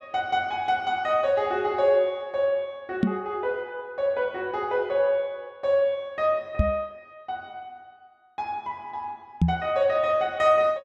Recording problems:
knock on the microphone; at 3 s, at 6.5 s and at 9.5 s; peak +8 dB vs average level

